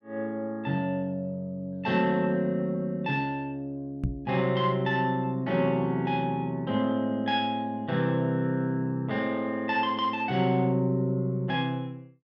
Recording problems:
microphone bump; at 4 s; peak +3 dB vs average level

